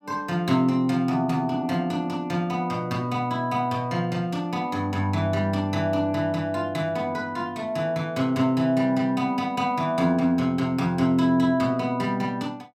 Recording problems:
none

